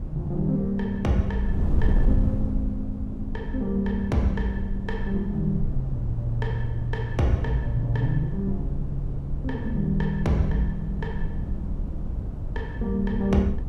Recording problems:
wind on the microphone; below 98 Hz, SNR 3 dB

